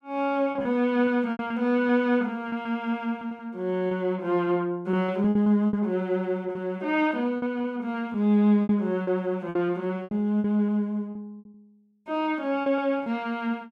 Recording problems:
lost packets; 10% of the sound replaced, filled with repeated pitch periods

